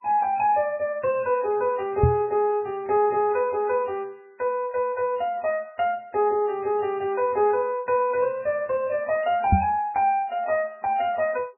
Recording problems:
lossy compression; MP3, log-spectral distance 2 dB, nothing above 2.4 kHz
microphone thump; at 2 s and at 9.5 s; peak +8 dB vs average level

